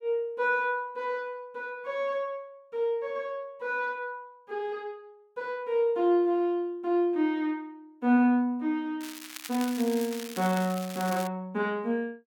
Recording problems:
crackling; from 9 to 11 s; loose cable, SNR 12 dB

